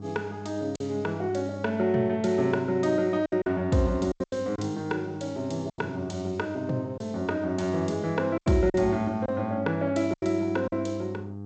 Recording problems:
lossy compression; G.722, then G.722, log-spectral distance 2 dB, nothing above 7.8 kHz
hum; 50 Hz, harmonics up to 800 Hz, SNR 12 dB
packet loss; 6% of the sound replaced, filled with silence

